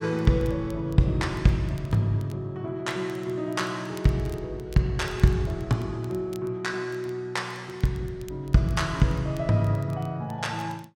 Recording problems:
crackle; vinyl, SNR 27 dB

